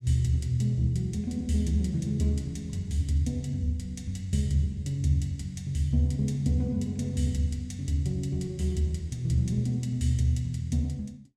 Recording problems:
none

